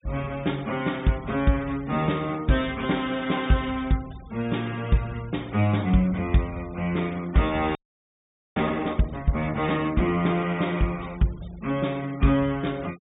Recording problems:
treble cut off; nothing above 3.7 kHz
denoising artefacts; signal-to-artefact ratio 25 dB
audio freezing; at 8 s for 1 s

